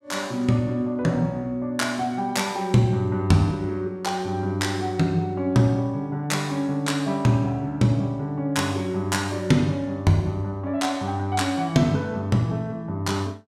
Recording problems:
none

